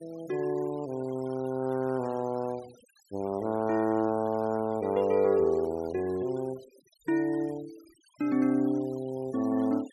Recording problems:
denoising artefacts; signal-to-artefact ratio 23 dB

